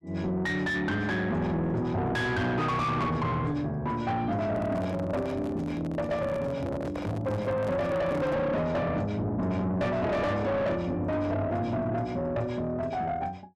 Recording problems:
distorted audio; soft clipping, signal-to-distortion ratio 5 dB
microphone handling noise; from 4.5 to 8.5 s; peak -3 dB vs average level

